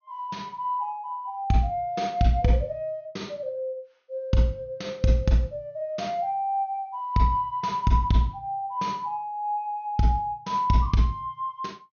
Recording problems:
low-pass filter; nothing above 6.5 kHz

